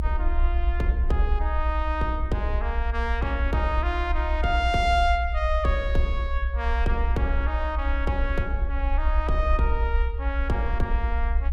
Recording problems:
low-frequency rumble; below 62 Hz, SNR -1 dB

